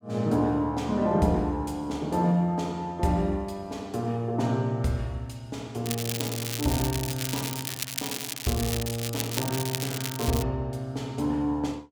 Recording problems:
crackling; from 6 to 10 s; loose cable, SNR 4 dB

